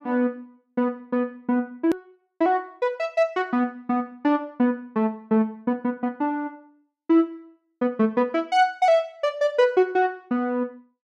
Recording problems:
click at an edit; at 2 s

